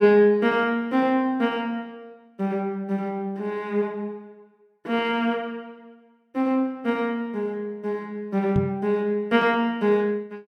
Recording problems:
knock on the microphone; at 8.5 s; peak +4 dB vs average level

